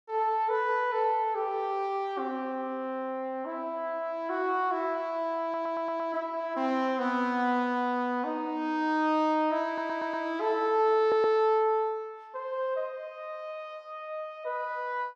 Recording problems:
audio stuttering; at 5.5 s, at 9.5 s and at 11 s

